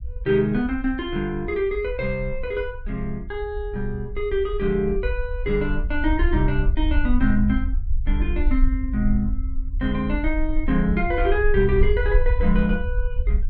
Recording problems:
low-frequency rumble; below 54 Hz, strongest tone 22 Hz, SNR 3 dB

